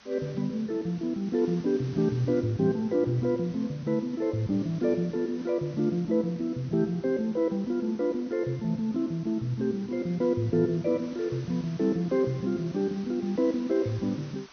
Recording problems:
treble cut off; nothing above 6.3 kHz
hiss; SNR 23 dB

